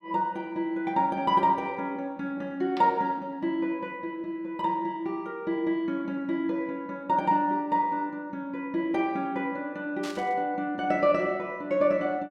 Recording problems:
burst of static; at 10 s; peak -8 dB vs average level

